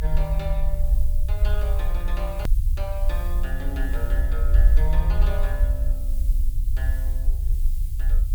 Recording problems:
background hiss; SNR 11 dB
rumble; below 54 Hz, SNR -11 dB
click at an edit; at 2.5 s

